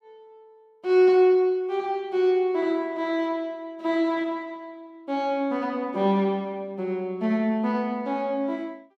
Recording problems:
none

